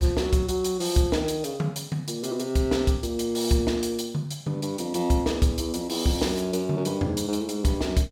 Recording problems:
none

